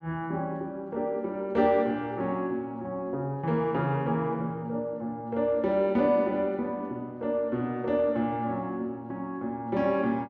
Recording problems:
none

